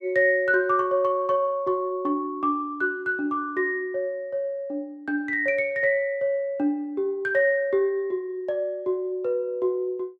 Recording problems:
none

